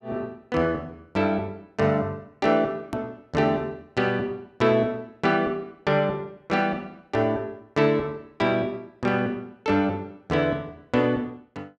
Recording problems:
edit click; at 3 s

